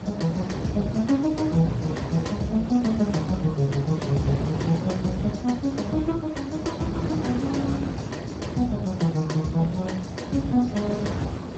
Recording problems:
lossy codec; Speex, log-spectral distance 4 dB, nothing above 7.6 kHz
wind noise; below 470 Hz, SNR 6 dB

